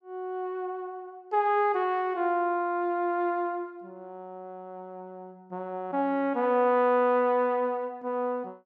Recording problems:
none

